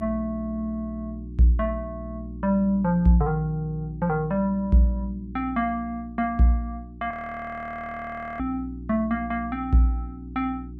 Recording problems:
hum; 60 Hz, harmonics up to 360 Hz, SNR 13 dB
audio freezing; at 7 s for 1.5 s

